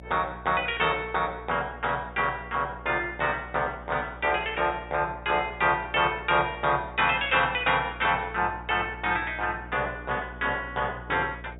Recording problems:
treble missing; nothing above 4 kHz
electrical hum; 60 Hz, harmonics up to 720 Hz, SNR 18 dB

